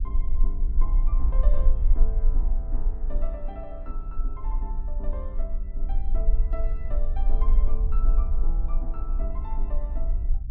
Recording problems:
rumble; below 38 Hz, strongest tone 18 Hz, SNR -14 dB

